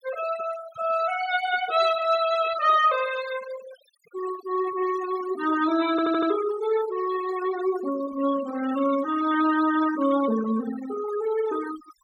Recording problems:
denoising artefacts; signal-to-artefact ratio 13 dB
stutter; at 6 s

